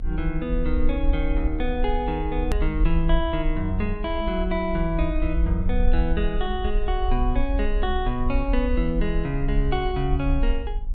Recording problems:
treble cut off; nothing above 4.3 kHz
hum; 50 Hz, harmonics up to 1.1 kHz, SNR 21 dB
rumble; below 52 Hz, SNR 1 dB
hard cut with a click; at 2.5 s

